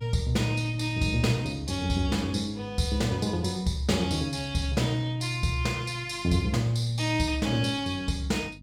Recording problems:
electrical hum; 50 Hz, harmonics up to 300 Hz, SNR 23 dB

